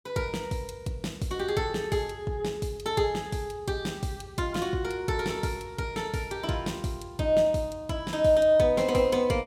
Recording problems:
none

